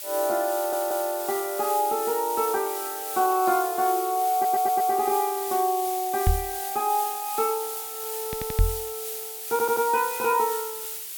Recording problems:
hiss; slope +3 dB per octave, SNR 6 dB
audio stuttering; 4 times, first at 0.5 s
knock on the microphone; at 6.5 s and at 8.5 s; peak +6 dB vs average level

